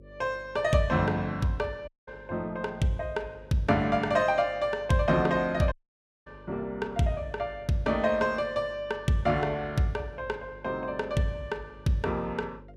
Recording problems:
hum; 50 Hz, harmonics up to 550 Hz, SNR 23 dB
dropout; at 2 s and at 5.5 s for 0.5 s

